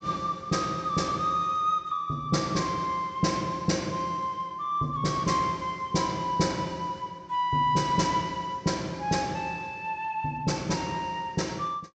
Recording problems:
low-pass filter; nothing above 8 kHz

